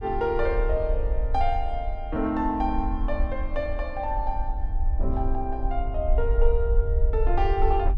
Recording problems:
low-frequency rumble; below 54 Hz, strongest tone 24 Hz, SNR 1 dB

